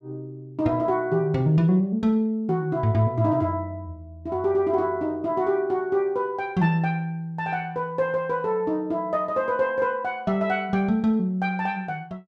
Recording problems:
none

